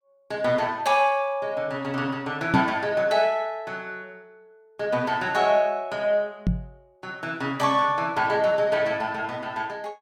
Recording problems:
microphone bump; at 2.5 s and at 6.5 s; peak +6 dB vs average level

